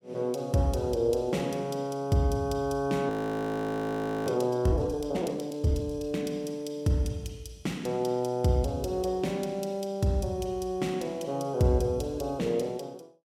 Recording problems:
frozen audio; at 3 s for 1 s

